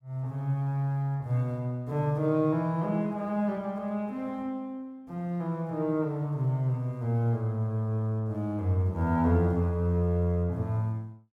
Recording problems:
none

